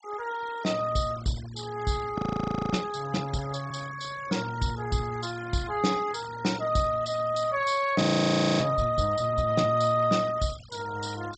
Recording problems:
low-pass filter; nothing above 8 kHz
noise reduction artefacts; signal-to-artefact ratio 18 dB
audio freezing; at 2 s for 0.5 s and at 8 s for 0.5 s

